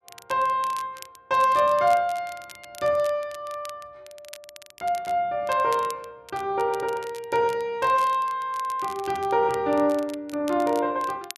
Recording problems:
crackle; vinyl, SNR 21 dB

